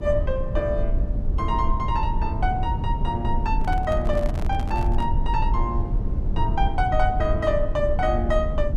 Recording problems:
rumble; below 76 Hz, SNR 0 dB
handling noise; from 3.5 to 5 s; peak -7 dB vs average level

